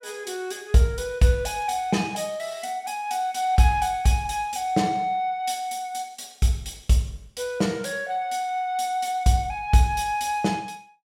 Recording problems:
none

